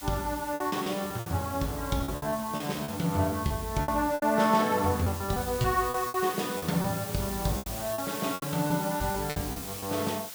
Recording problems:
background hiss; slope +1 dB per octave, SNR 9 dB
packet loss; 12% of the sound replaced, filled with repeated pitch periods

